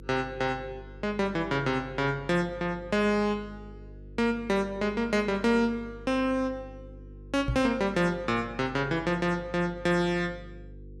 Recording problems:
electrical hum; 50 Hz, harmonics up to 500 Hz, SNR 19 dB
microphone thump; at 7.5 s; peak +1 dB vs average level

